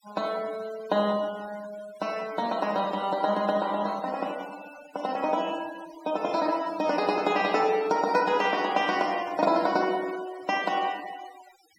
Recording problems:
noise reduction artefacts; signal-to-artefact ratio 18 dB

